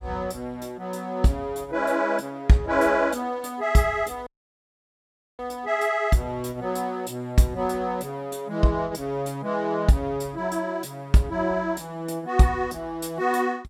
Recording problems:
dropout; at 4.5 s for 1 s

